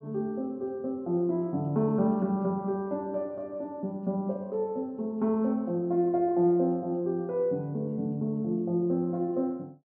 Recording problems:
none

